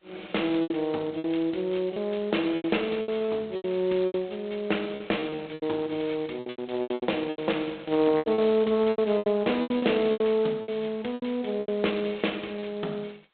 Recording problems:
phone line; 220 Hz to 3.9 kHz, G.726
lost packets; 14% of the sound replaced, filled with repeated pitch periods

